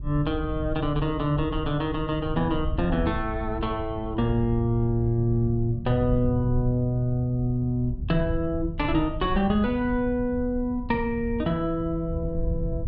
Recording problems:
rumble; below 100 Hz, SNR 11 dB
wind noise; below 90 Hz, SNR 11 dB

